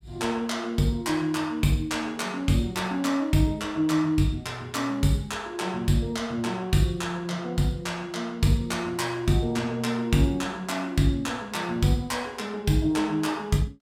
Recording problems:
none

